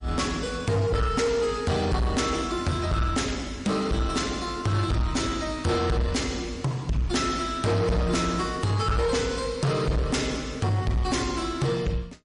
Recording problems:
lossy codec; MP3, log-spectral distance 3 dB, nothing above 10.4 kHz
distortion; soft clipping, signal-to-distortion ratio 8 dB

